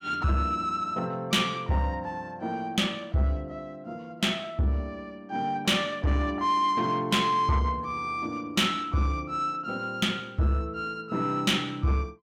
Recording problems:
distortion; soft clipping, signal-to-distortion ratio 10 dB

